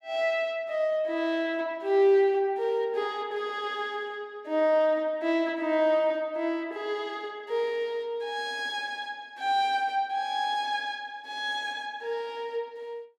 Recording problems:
none

